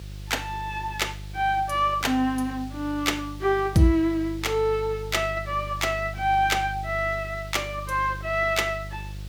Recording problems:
hum; 50 Hz, harmonics up to 400 Hz, SNR 13 dB
background hiss; SNR 23 dB

